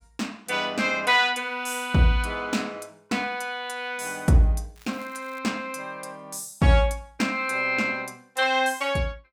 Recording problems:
crackle; at 5 s; loose cable, SNR 27 dB

